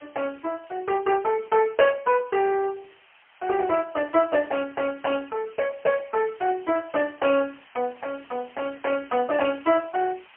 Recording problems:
phone line; 320 Hz to 3.1 kHz, AMR-NB, then MP3
hiss; SNR 27 dB

